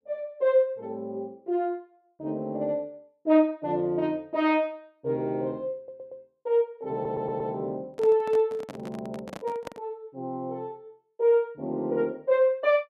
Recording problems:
audio stuttering; at 6 s and at 7 s
microphone handling noise; from 8 to 10 s; peak -7 dB vs average level

